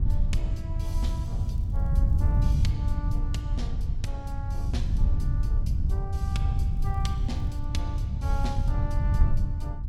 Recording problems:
wind noise; below 90 Hz, SNR -11 dB
crackling; from 1 to 2.5 s and at 6.5 s; loose cable, SNR 26 dB

